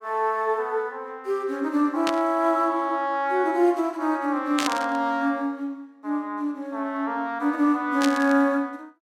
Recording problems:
burst of static; at 2 s, at 4.5 s and at 8 s; peak +2 dB vs average level

